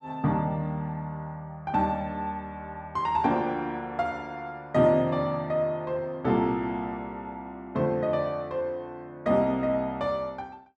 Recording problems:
none

